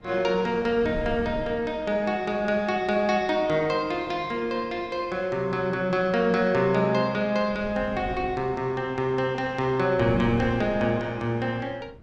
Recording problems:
wind noise; below 260 Hz, SNR 17 dB

